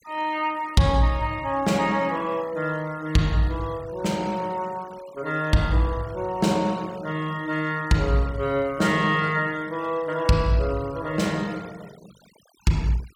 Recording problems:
denoising artefacts; signal-to-artefact ratio 22 dB

